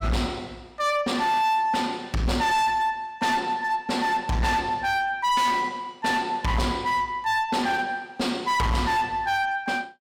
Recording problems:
distortion; hard clipping, signal-to-distortion ratio 7 dB

